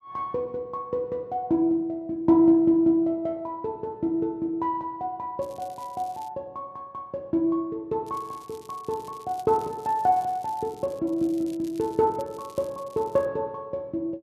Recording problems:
crackling; at 5.5 s, from 8 to 11 s and from 11 to 13 s; loose cable, SNR 26 dB

